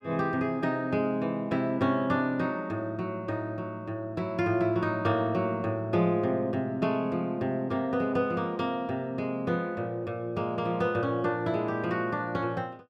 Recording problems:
none

